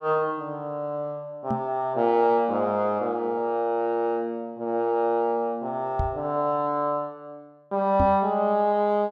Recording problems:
knock on the microphone; at 1.5 s, at 6 s and at 8 s; peak +2 dB vs average level

